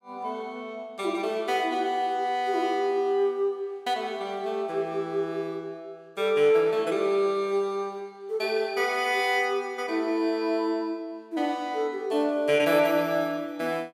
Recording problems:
none

